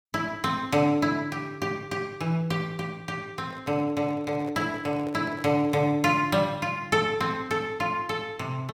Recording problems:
handling noise; from 3.5 to 6 s; peak -10 dB vs average level

